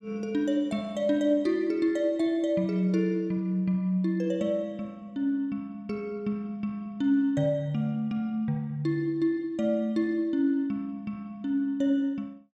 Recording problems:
none

